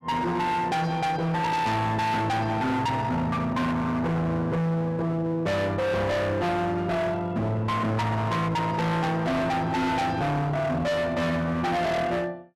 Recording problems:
distorted audio; hard clipping, uneven, signal-to-distortion ratio 6 dB

